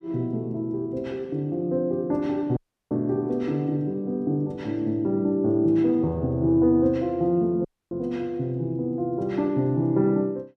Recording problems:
dropout; at 2.5 s and at 7.5 s

